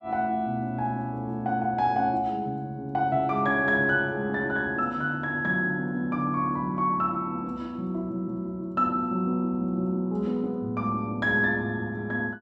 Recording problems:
none

